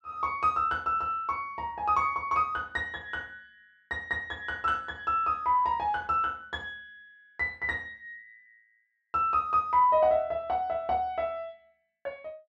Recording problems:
none

